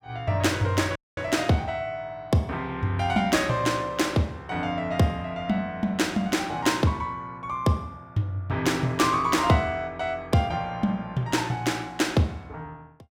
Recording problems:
audio cutting out; at 1 s

